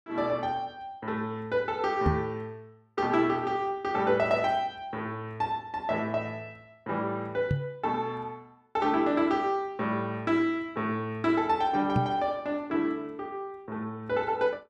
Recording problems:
microphone thump; at 2 s, at 7.5 s and at 12 s; peak +6 dB vs average level

